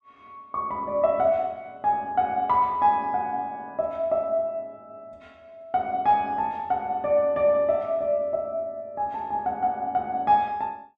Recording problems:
none

